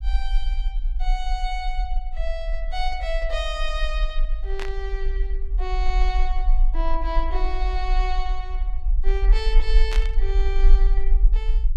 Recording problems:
rumble; below 40 Hz, strongest tone 24 Hz, SNR -6 dB
burst of static; at 4.5 s and at 10 s; peak +2 dB vs average level

